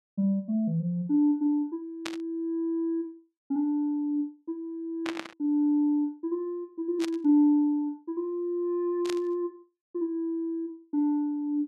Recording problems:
static burst; 4 times, first at 2 s; peak -2 dB vs average level

